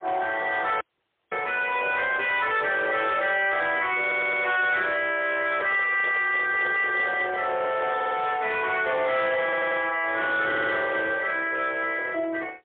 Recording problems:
phone line; 300 Hz to 3.7 kHz, AMR-NB, then MP3
distortion; soft clipping, signal-to-distortion ratio 11 dB
audio cutting out; at 1 s for 0.5 s
stutter; 4 times, first at 4 s
microphone handling noise; from 5 to 8.5 s; peak -5 dB vs average level

